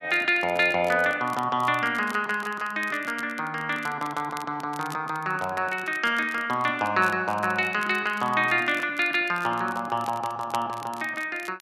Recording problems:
crackling; vinyl, SNR 21 dB

